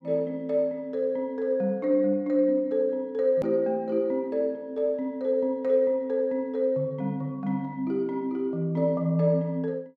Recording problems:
click at an edit; at 3.5 s

